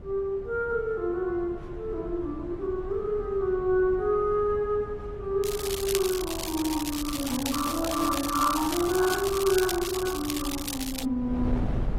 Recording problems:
codec artefacts; AAC, then AAC, log-spectral distance 4 dB, nothing above 13.1 kHz
wind noise; below 190 Hz, SNR 12 dB
crackle; from 5.5 to 11 s; loose cable, SNR 6 dB

